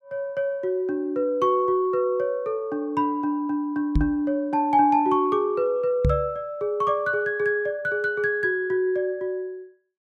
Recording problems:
knock on the microphone; at 4 s and at 6 s; peak +4 dB vs average level

